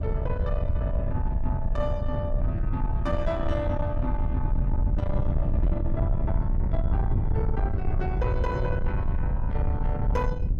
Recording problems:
distortion; soft clipping, signal-to-distortion ratio 11 dB
low-frequency rumble; below 100 Hz, SNR -5 dB

